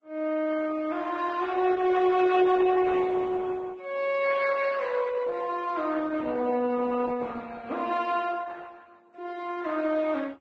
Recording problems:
lossy compression; Opus, then Vorbis, log-spectral distance 3 dB, nothing above 8 kHz

